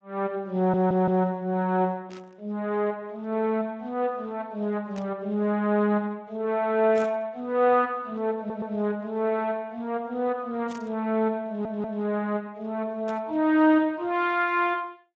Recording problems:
codec artefacts; AAC, then Speex, log-spectral distance 2 dB
stutter; at 0.5 s, at 8.5 s and at 11 s
burst of static; 5 times, first at 2 s; peak -14 dB vs average level

